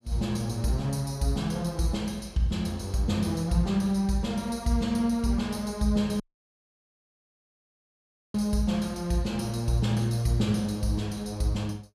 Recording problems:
dropout; at 6 s for 2 s

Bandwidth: 14.5 kHz